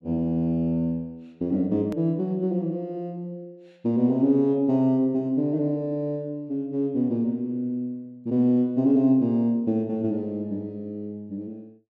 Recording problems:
hard cut with a click; at 2 s

